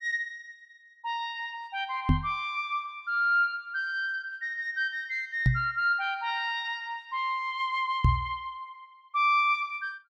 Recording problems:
microphone bump; at 2 s, at 5.5 s and at 8 s; peak +9 dB vs average level

